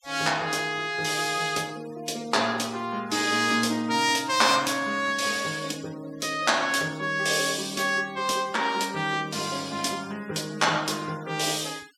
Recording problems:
noise reduction artefacts; signal-to-artefact ratio 21 dB

